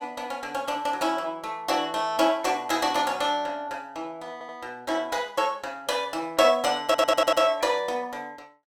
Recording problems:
audio stuttering; at 4.5 s and at 7 s

